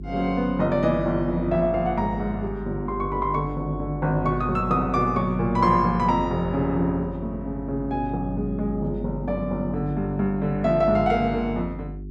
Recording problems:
electrical hum; 50 Hz, harmonics up to 400 Hz, SNR 11 dB

